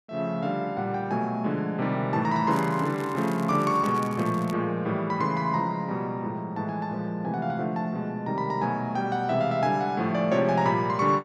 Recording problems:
crackling; from 2.5 to 4.5 s; loose cable, SNR 21 dB

